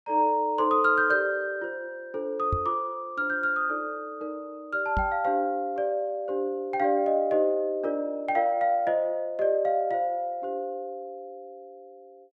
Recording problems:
knock on the microphone; at 2.5 s and at 5 s; peak +1 dB vs average level

